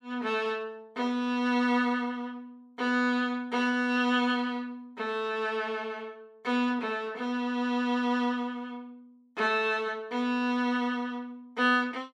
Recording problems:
none

